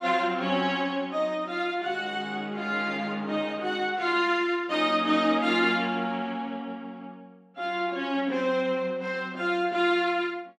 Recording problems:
none

